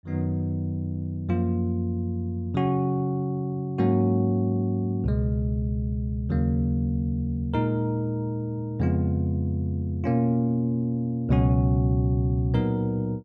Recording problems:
none

